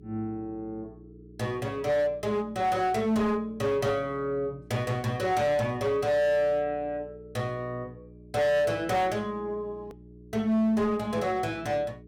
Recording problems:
distorted audio; hard clipping, signal-to-distortion ratio 11 dB
hum; 60 Hz, harmonics up to 420 Hz, SNR 22 dB
edit click; at 10 s

